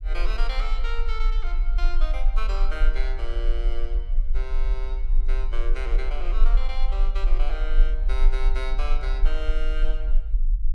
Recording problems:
rumble; below 36 Hz, strongest tone 22 Hz, SNR -9 dB

